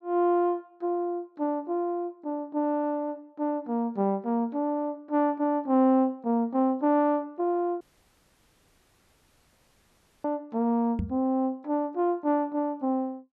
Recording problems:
dropout; at 8 s for 2.5 s
microphone thump; at 11 s; peak +1 dB vs average level

